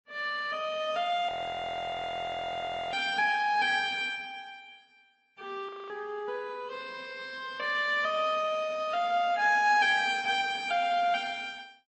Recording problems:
codec artefacts; Opus, then MP3, log-spectral distance 3 dB, nothing above 6.7 kHz
audio freezing; at 1.5 s for 1.5 s and at 5.5 s

